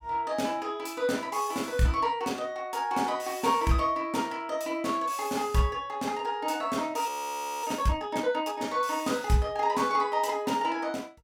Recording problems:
audio freezing; at 7 s for 0.5 s

